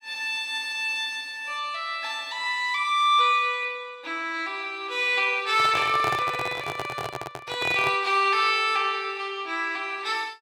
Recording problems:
microphone handling noise; from 5.5 to 8 s; peak -2 dB vs average level

